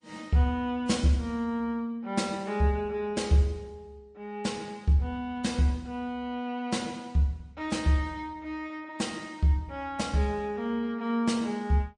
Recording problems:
lossy compression; MP3, log-spectral distance 2 dB, nothing above 9 kHz

